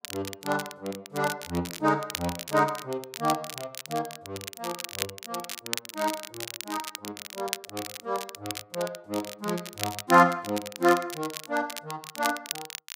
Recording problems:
crackling; vinyl, SNR 8 dB

